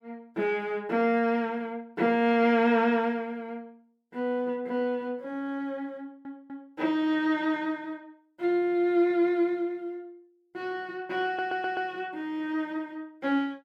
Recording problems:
audio stuttering; at 6 s and at 11 s

